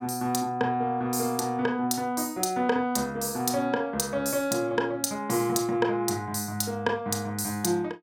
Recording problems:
none

